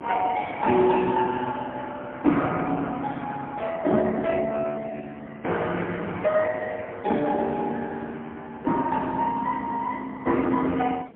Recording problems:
telephone audio; 150 Hz to 3.4 kHz, AMR-NB, then MP3
wind noise; below 500 Hz, SNR 19 dB

